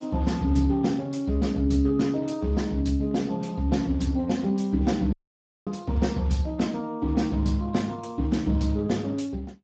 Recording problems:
lossy compression; Speex, log-spectral distance 3 dB, nothing above 7.3 kHz
dropout; at 5 s for 0.5 s

